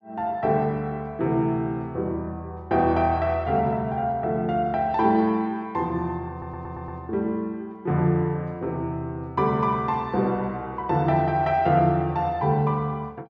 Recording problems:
audio stuttering; at 6.5 s

